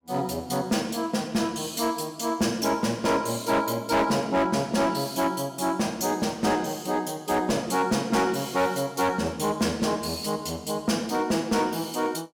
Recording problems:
distorted audio; hard clipping, signal-to-distortion ratio 12 dB

